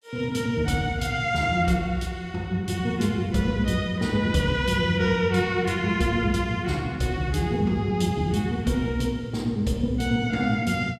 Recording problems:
none

